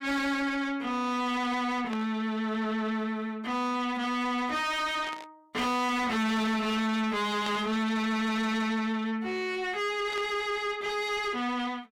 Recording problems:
distorted audio; soft clipping, signal-to-distortion ratio 6 dB
static burst; 4 times, first at 2 s; peak -7 dB vs average level

